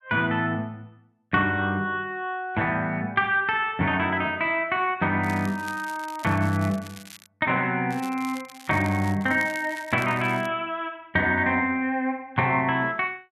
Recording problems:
crackling; from 5 to 7.5 s and from 8 to 10 s; loose cable, SNR 20 dB

